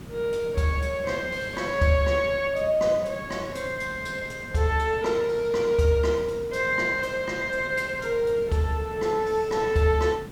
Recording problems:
hiss; slope -5 dB per octave, SNR 17 dB

